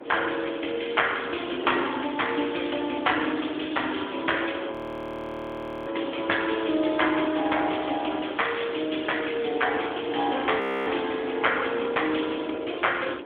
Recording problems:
phone line; 260 Hz to 3.5 kHz, AMR-NB
wind noise; below 560 Hz, SNR 11 dB
audio freezing; at 4.5 s for 1 s and at 11 s

